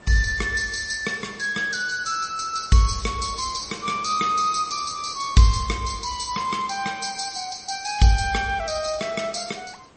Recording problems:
lossy codec; MP3, log-spectral distance 10 dB, nothing above 8 kHz
background hiss; slope -6 dB per octave, SNR 25 dB

